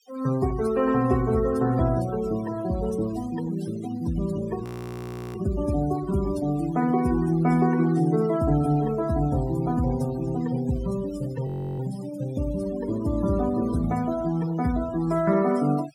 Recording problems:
noise reduction artefacts; signal-to-artefact ratio 17 dB
audio freezing; at 4.5 s for 0.5 s and at 11 s

